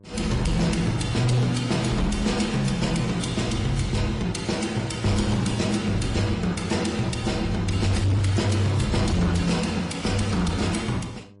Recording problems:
codec artefacts; AAC, then MP3, log-spectral distance 4 dB, nothing above 10.4 kHz
distorted audio; hard clipping, uneven, signal-to-distortion ratio 12 dB
mains hum; 50 Hz, harmonics up to 1.1 kHz, SNR 28 dB

